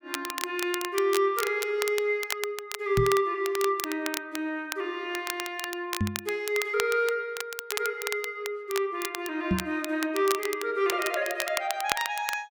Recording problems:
crackling; vinyl, SNR 7 dB
microphone bump; at 3 s, at 6 s and at 9.5 s; peak +6 dB vs average level

